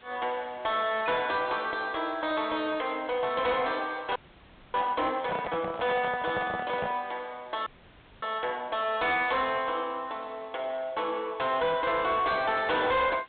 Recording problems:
low-pass filter; nothing above 4 kHz
distorted audio; soft clipping, signal-to-distortion ratio 11 dB
background hiss; SNR 27 dB
audio freezing; at 4 s for 0.5 s and at 7.5 s for 0.5 s
handling noise; from 5.5 to 7 s; peak -1 dB vs average level

